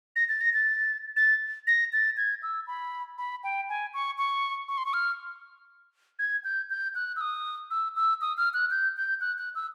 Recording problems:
none

